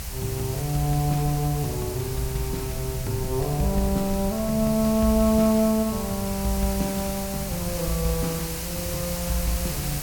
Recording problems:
hiss; slope -1 dB per octave, SNR 8 dB
low-frequency rumble; below 100 Hz, SNR 11 dB

